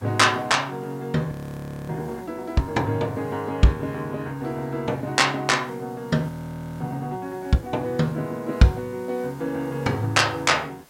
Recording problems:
background hiss; slope -3 dB per octave, SNR 27 dB
frozen audio; at 1.5 s for 0.5 s and at 6.5 s for 0.5 s

